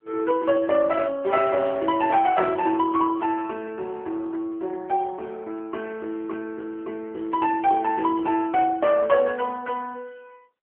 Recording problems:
telephone audio; 260 Hz to 2.6 kHz, AMR-NB

